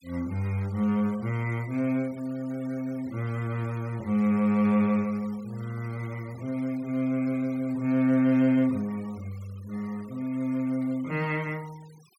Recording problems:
denoising artefacts; signal-to-artefact ratio 24 dB

